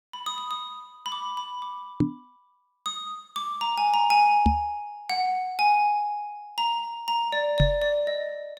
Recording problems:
microphone bump; at 2 s, at 4.5 s and at 7.5 s; peak +7 dB vs average level

